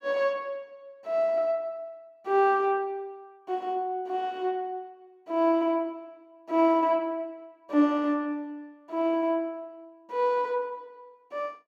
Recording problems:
none

